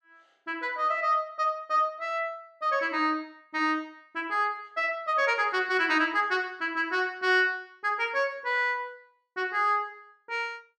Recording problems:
none

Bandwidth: 12.5 kHz